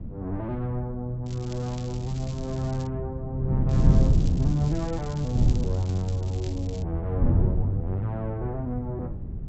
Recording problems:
treble missing; nothing above 7.8 kHz
wind on the microphone; below 150 Hz, SNR -2 dB
crackle; from 1.5 to 3 s and from 3.5 to 7 s; loose cable, SNR 17 dB

